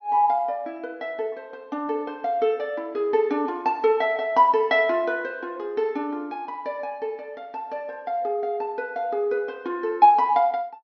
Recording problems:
treble missing; nothing above 6.4 kHz

